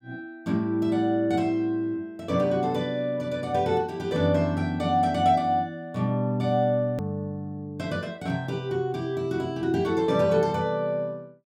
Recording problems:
hard cut with a click; at 7 s

